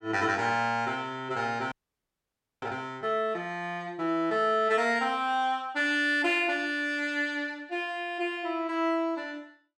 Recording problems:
frozen audio; at 1.5 s for 1 s

